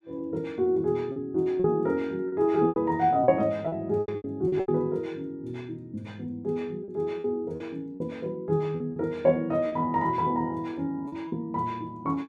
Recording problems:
lost packets; 8% of the sound replaced, filled with repeated pitch periods

